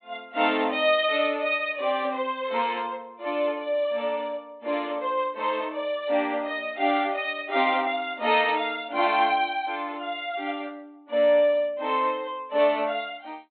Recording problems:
low-pass filter; nothing above 4 kHz

